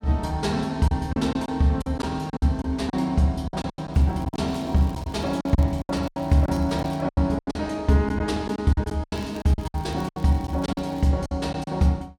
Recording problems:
lost packets; 13% of the sound replaced, filled with silence
crackling; from 4 to 7 s and from 9 to 11 s; loose cable, SNR 27 dB

